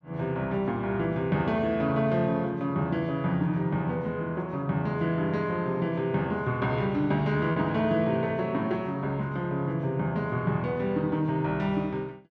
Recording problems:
lost packets; 0.3% of the sound replaced, filled with repeated pitch periods

